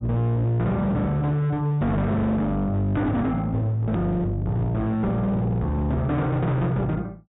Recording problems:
treble missing; nothing above 4 kHz
distortion; hard clipping, signal-to-distortion ratio 8 dB
hard cut with a click; at 4 s

